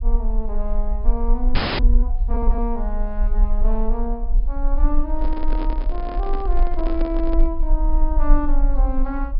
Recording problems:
treble cut off; nothing above 5.5 kHz
rumble; below 38 Hz, strongest tone 20 Hz, SNR -5 dB
frozen audio; at 1.5 s
handling noise; from 5 to 7.5 s; peak +1 dB vs average level

